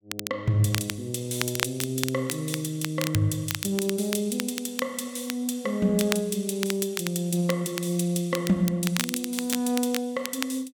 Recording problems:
crackle; vinyl, SNR 7 dB

